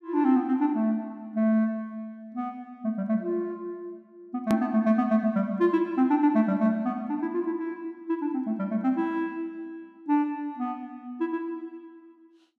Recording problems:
click at an edit; at 4.5 s

